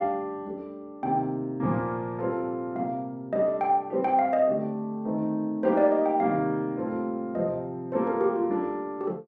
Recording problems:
none

